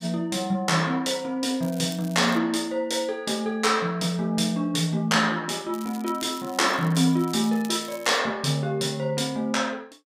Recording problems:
crackling; at 1.5 s and from 5.5 to 8 s; loose cable, SNR 20 dB

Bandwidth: 15.5 kHz